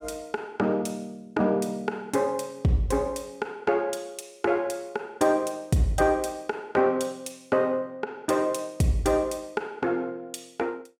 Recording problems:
none

